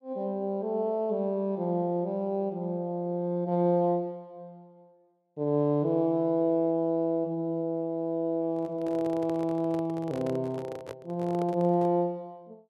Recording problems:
handling noise; from 8.5 to 12 s; peak -7 dB vs average level

